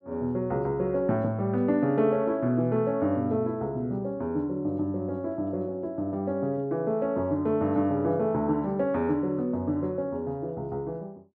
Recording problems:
none

